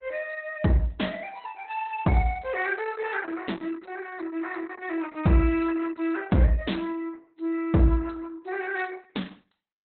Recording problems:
codec artefacts; Opus, log-spectral distance 5 dB, nothing above 4 kHz

